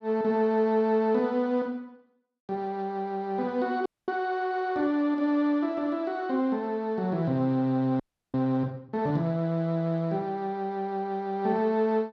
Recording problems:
audio freezing; at 4 s and at 8 s

